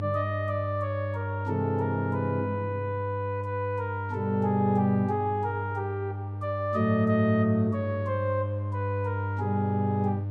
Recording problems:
hum; 50 Hz, harmonics up to 600 Hz, SNR 5 dB

